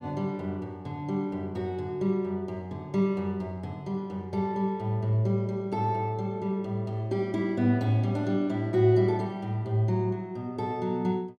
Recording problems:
none

